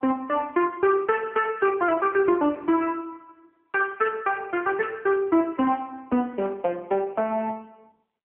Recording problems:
phone line; 260 Hz to 3.1 kHz, AMR-NB

